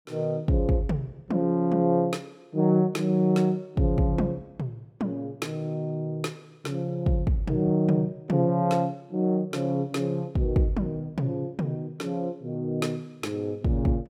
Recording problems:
none

